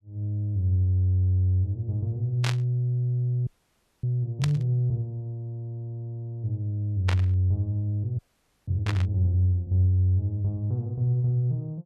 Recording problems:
static burst; 4 times, first at 2.5 s; peak -1 dB vs average level
audio freezing; at 3.5 s for 0.5 s and at 8 s

